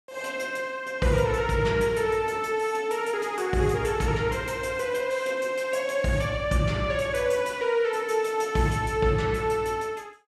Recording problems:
none

